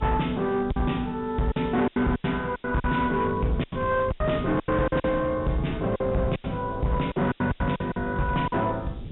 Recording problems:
treble cut off; nothing above 3.8 kHz
distorted audio; hard clipping, signal-to-distortion ratio 11 dB
hiss; SNR 30 dB
wind on the microphone; below 220 Hz, SNR 14 dB
lost packets; 12% of the sound replaced, filled with silence

